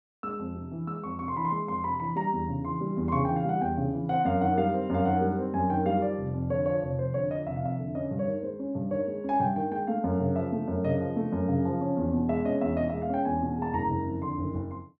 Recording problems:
none

